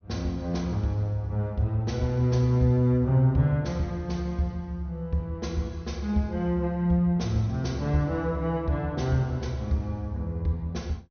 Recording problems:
treble cut off; nothing above 6.3 kHz

